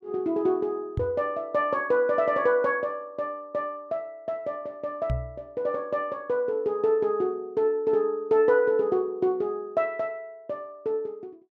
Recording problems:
knock on the microphone; at 1 s and at 5 s; peak +1 dB vs average level

